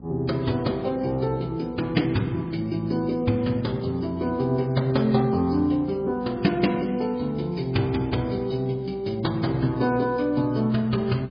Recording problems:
codec artefacts; MP3, log-spectral distance 3 dB, nothing above 5 kHz
hum; 60 Hz, harmonics up to 840 Hz, SNR 21 dB

